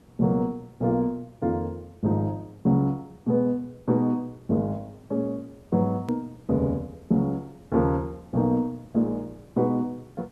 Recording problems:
background hiss; slope -7 dB per octave, SNR 27 dB
hard cut with a click; at 6 s

